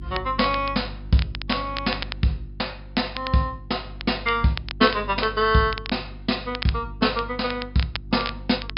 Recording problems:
treble cut off; nothing above 5.5 kHz
hum; 50 Hz, harmonics up to 350 Hz, SNR 14 dB
crackle; vinyl, SNR 11 dB

